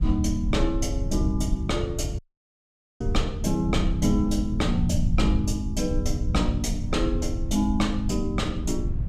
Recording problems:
rumble; below 96 Hz, SNR 2 dB
wind noise; below 120 Hz, SNR 15 dB
dropout; at 2 s for 1 s

